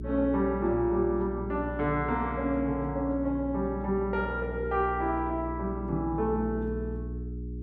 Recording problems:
electrical hum; 60 Hz, harmonics up to 420 Hz, SNR 8 dB

